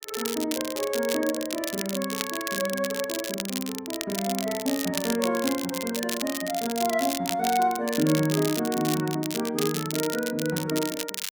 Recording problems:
crackle; vinyl, SNR 5 dB

